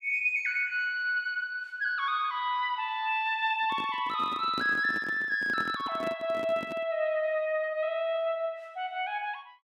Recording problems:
microphone handling noise; from 3.5 to 7 s; peak -4 dB vs average level

